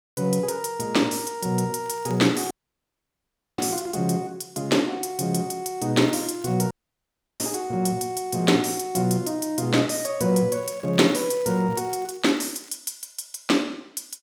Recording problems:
crackling; from 2 to 4 s, at 6 s and from 11 to 13 s; loose cable, SNR 27 dB
dropout; at 2.5 s for 1 s and at 6.5 s for 0.5 s

